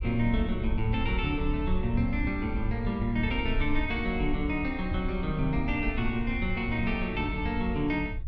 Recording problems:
low-frequency rumble; below 70 Hz, SNR 5 dB

